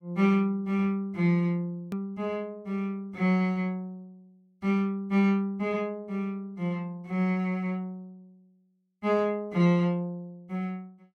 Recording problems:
edit click; at 2 s

